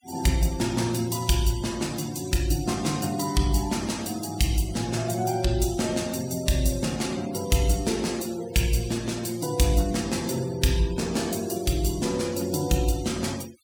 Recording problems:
denoising artefacts; signal-to-artefact ratio 18 dB

